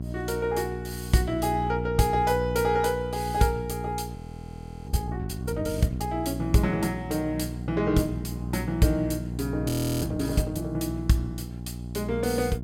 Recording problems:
hum; 60 Hz, harmonics up to 660 Hz, SNR 6 dB
audio freezing; at 4 s for 0.5 s and at 9.5 s

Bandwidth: 16 kHz